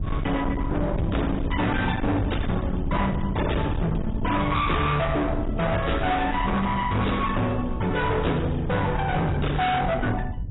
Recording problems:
lossy codec; AAC, log-spectral distance 4 dB, nothing above 3.8 kHz
distorted audio; hard clipping, signal-to-distortion ratio 6 dB
rumble; below 220 Hz, SNR 6 dB

